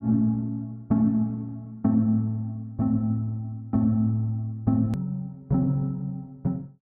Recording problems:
edit click; at 5 s

